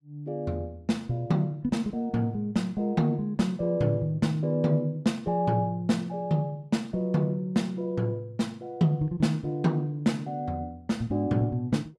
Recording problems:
none

